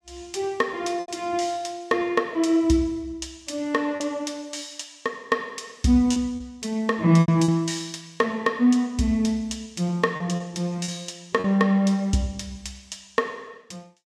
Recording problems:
packet loss; 4% of the sound replaced, filled with repeated pitch periods

